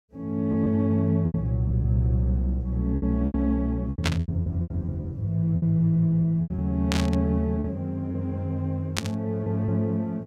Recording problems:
packet loss; 9% of the sound replaced, filled with repeated pitch periods
static burst; at 4 s, at 7 s and at 9 s; peak +3 dB vs average level

